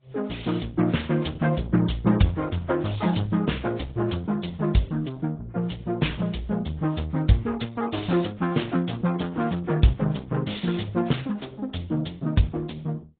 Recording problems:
treble missing; nothing above 3.9 kHz
lossy codec; Opus, then AAC, log-spectral distance 5 dB

